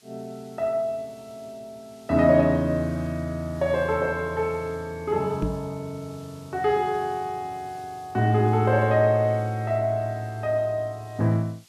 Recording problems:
background hiss; slope +1 dB per octave, SNR 28 dB
microphone thump; at 5.5 s; peak +2 dB vs average level

